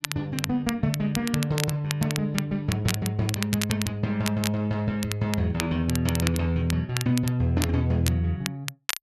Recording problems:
crackle; vinyl, SNR 8 dB

